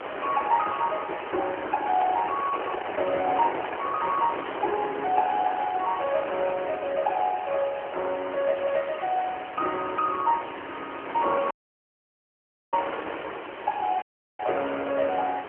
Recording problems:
phone line; 300 Hz to 3.3 kHz, AMR-NB
hiss; SNR 21 dB
wind noise; below 1.6 kHz, SNR 9 dB
dropout; at 12 s for 1 s and at 14 s

